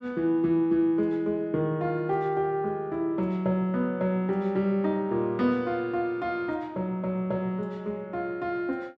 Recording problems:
none

